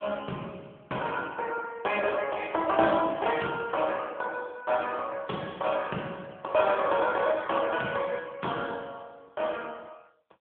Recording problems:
phone line; 240 Hz to 3.3 kHz, AMR-NB

